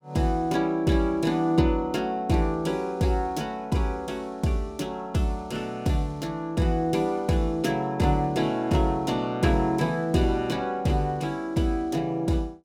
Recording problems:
none

